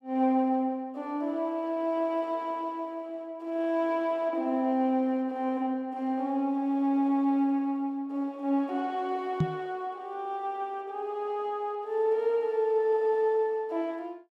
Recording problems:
knock on the microphone; at 9.5 s; peak +6 dB vs average level

